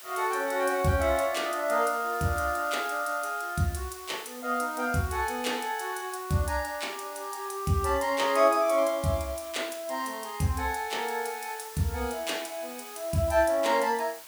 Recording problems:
hiss; slope +1 dB per octave, SNR 15 dB

